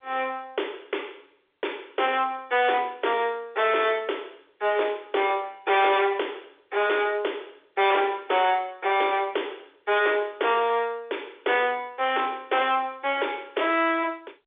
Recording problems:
phone line; 340 Hz to 3.6 kHz, G.711
distortion; hard clipping, signal-to-distortion ratio 11 dB

